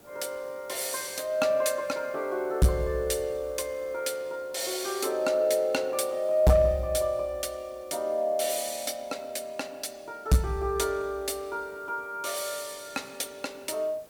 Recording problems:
distorted audio; hard clipping, signal-to-distortion ratio 11 dB
hiss; SNR 26 dB

